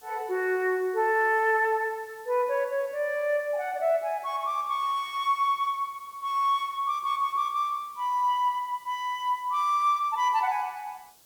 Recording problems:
hiss; SNR 27 dB

